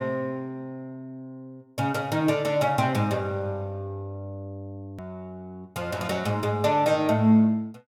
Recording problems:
click at an edit; at 5 s

